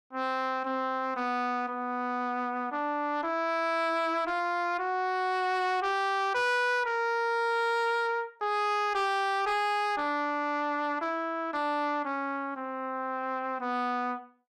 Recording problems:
distorted audio; soft clipping, signal-to-distortion ratio 10 dB

